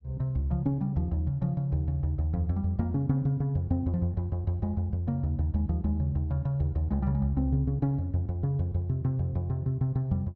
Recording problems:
none

